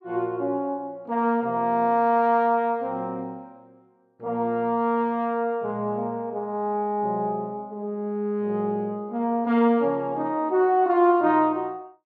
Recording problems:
none

